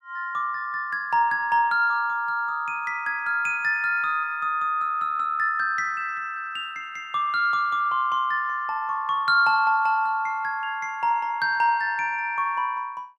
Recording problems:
none

